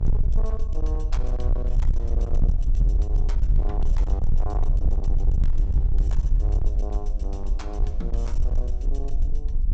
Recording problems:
treble cut off; nothing above 8 kHz
distorted audio; hard clipping, uneven, signal-to-distortion ratio 7 dB
electrical hum; 50 Hz, harmonics up to 350 Hz, SNR 6 dB
low-frequency rumble; below 52 Hz, SNR -12 dB

